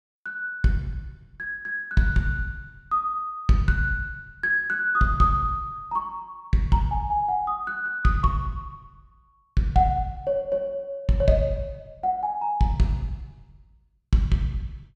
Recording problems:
none

